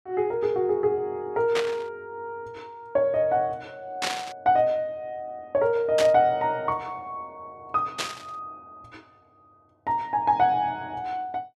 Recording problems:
static burst; 4 times, first at 1.5 s; peak +2 dB vs average level

